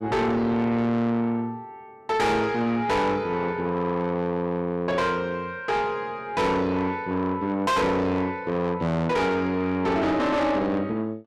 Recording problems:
distorted audio; soft clipping, signal-to-distortion ratio 6 dB

